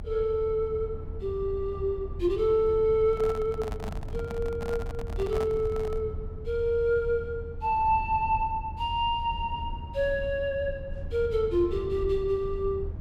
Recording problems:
rumble; below 94 Hz, SNR 10 dB
handling noise; from 3 to 6 s; peak -7 dB vs average level

